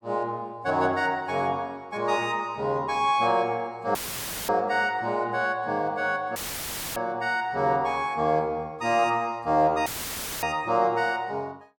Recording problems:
dropout; at 4 s for 0.5 s, at 6.5 s for 0.5 s and at 10 s for 0.5 s; filled with static

